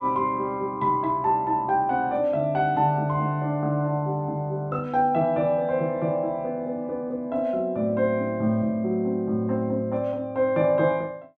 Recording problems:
none

